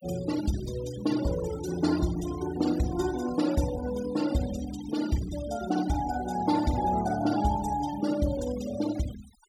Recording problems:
denoising artefacts; signal-to-artefact ratio 13 dB

